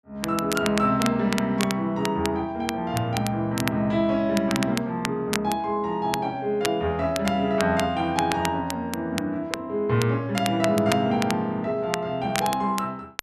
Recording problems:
crackle; vinyl, SNR 9 dB

